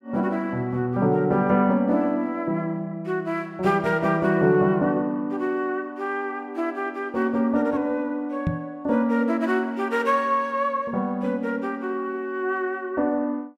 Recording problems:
knock on the microphone; at 8.5 s; peak +3 dB vs average level

